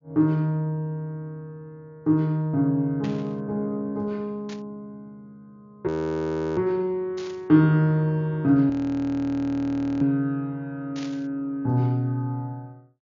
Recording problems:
low-pass filter; nothing above 7.2 kHz
burst of static; 4 times, first at 3 s; peak -12 dB vs average level
frozen audio; at 6 s for 0.5 s and at 8.5 s for 1.5 s

